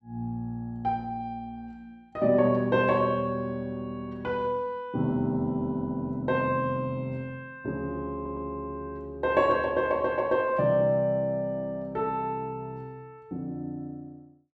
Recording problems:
audio stuttering; at 8 s

